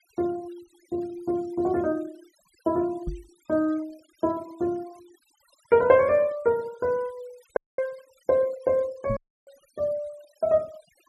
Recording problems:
noise reduction artefacts; signal-to-artefact ratio 27 dB
knock on the microphone; at 3 s and at 9 s; peak -2 dB vs average level
dropout; at 7.5 s and at 9 s

